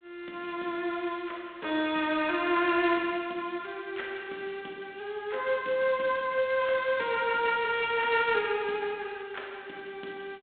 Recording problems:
phone line; 220 Hz to 3.6 kHz, G.726

